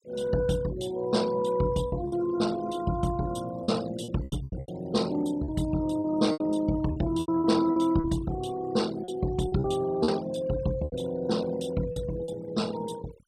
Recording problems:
noise reduction artefacts; signal-to-artefact ratio 19 dB
lost packets; 9% of the sound replaced, filled with repeated pitch periods

